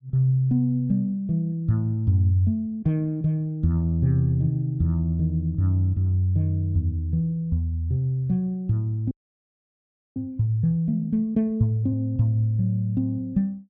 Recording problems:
audio freezing; at 9 s for 1 s

